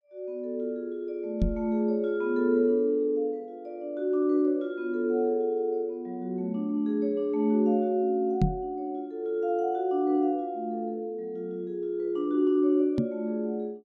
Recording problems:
microphone thump; at 1.5 s, at 8.5 s and at 13 s; peak +7 dB vs average level

